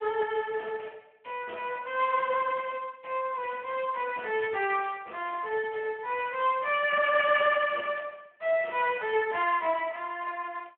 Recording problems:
telephone audio; 320 Hz to 3.4 kHz, Speex

